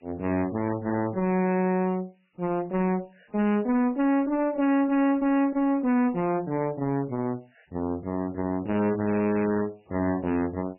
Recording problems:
lossy compression; MP3, log-spectral distance 6 dB, nothing above 2.4 kHz
distorted audio; hard clipping, uneven, signal-to-distortion ratio 4 dB
hiss; SNR 43 dB

